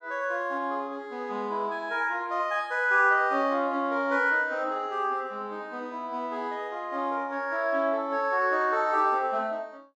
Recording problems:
none

